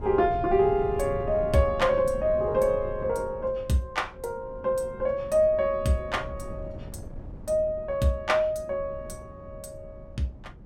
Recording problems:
wind noise; below 190 Hz, SNR 14 dB

